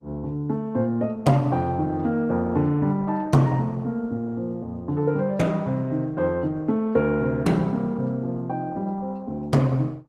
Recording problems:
lossy compression; Opus, log-spectral distance 2 dB, nothing above 15.6 kHz

